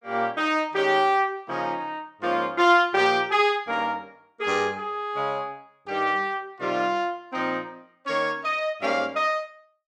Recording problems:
none

